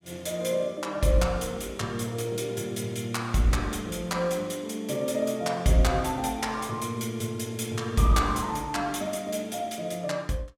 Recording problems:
none

